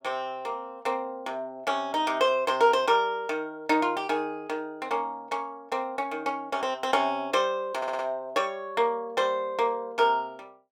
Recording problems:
audio stuttering; at 8 s

